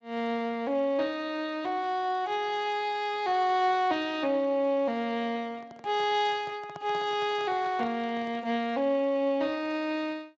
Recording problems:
lossy compression; Speex, log-spectral distance 2 dB
microphone handling noise; from 5.5 to 8.5 s; peak -10 dB vs average level

